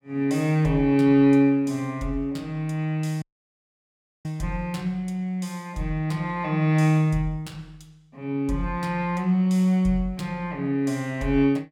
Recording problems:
dropout; at 3 s for 1 s

